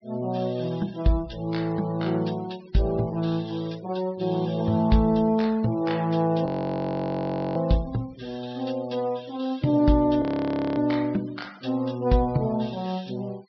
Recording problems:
treble cut off; nothing above 5.5 kHz
noise reduction artefacts; signal-to-artefact ratio 25 dB
audio freezing; at 6.5 s for 1 s and at 10 s for 0.5 s

